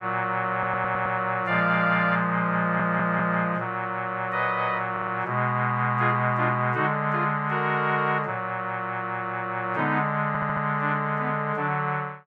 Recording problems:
audio stuttering; 4 times, first at 0.5 s

